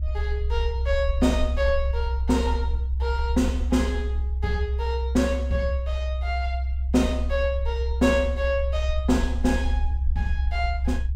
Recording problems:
rumble; below 66 Hz, strongest tone 64 Hz, SNR 0 dB

